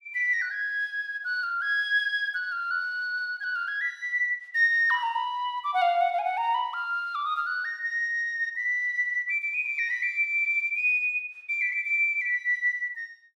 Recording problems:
none

